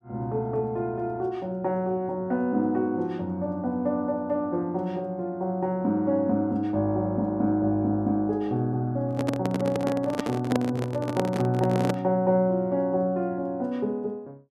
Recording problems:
microphone handling noise; from 9 to 12 s; peak +3 dB vs average level

